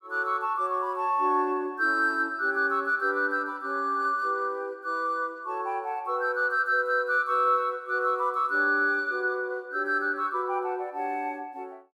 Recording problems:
none

